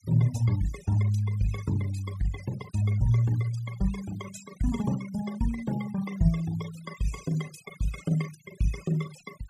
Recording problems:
denoising artefacts; signal-to-artefact ratio 16 dB

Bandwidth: 15 kHz